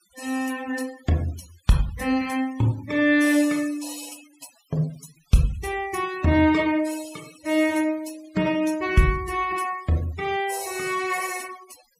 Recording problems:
noise reduction artefacts; signal-to-artefact ratio 19 dB

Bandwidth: 15.5 kHz